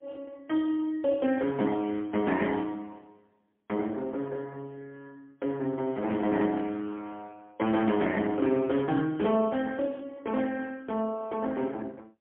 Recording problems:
telephone audio; 150 Hz to 3.4 kHz, AMR-NB, then MP3

